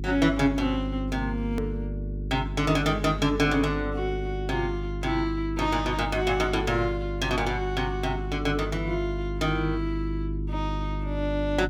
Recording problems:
electrical hum; 50 Hz, harmonics up to 400 Hz, SNR 5 dB
hard cut with a click; at 1.5 s

